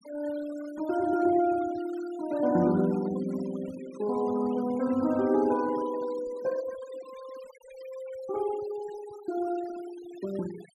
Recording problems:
denoising artefacts; signal-to-artefact ratio 19 dB

